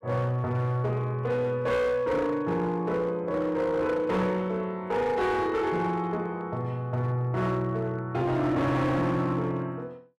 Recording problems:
distorted audio; hard clipping, signal-to-distortion ratio 10 dB

